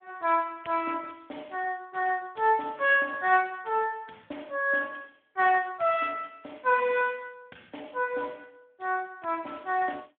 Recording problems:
phone line; 300 Hz to 3.6 kHz, Speex

